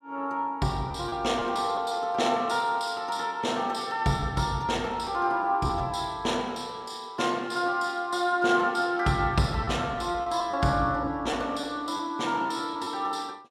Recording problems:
packet loss; 5% of the sound replaced, filled with repeated pitch periods

